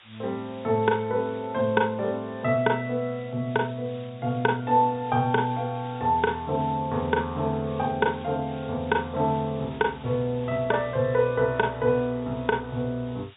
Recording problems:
treble missing; nothing above 4 kHz
background hiss; SNR 24 dB

